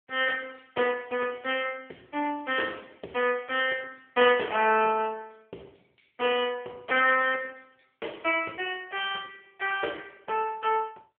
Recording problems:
phone line; 320 Hz to 3.3 kHz, AMR-NB

